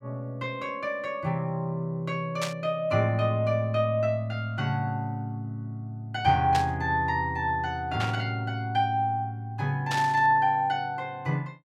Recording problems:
burst of static; 4 times, first at 2.5 s; peak 0 dB vs average level

